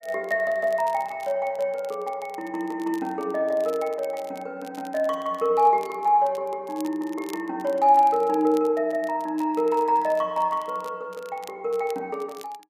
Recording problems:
crackling; vinyl, SNR 25 dB

